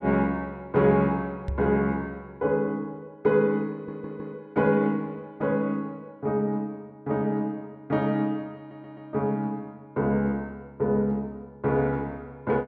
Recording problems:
knock on the microphone; at 1.5 s; peak -1 dB vs average level
stutter; at 3.5 s and at 8.5 s

